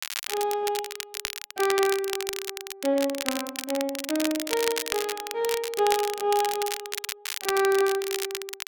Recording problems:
crackling; vinyl, SNR 5 dB

